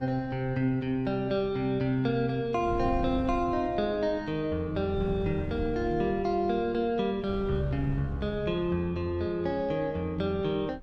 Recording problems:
wind on the microphone; below 150 Hz, SNR 13 dB

